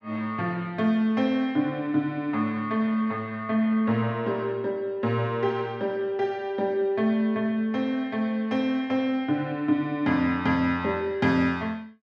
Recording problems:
none

